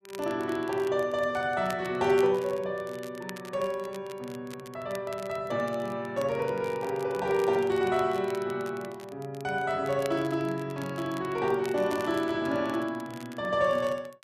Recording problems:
crackle; vinyl, SNR 20 dB

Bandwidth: 14 kHz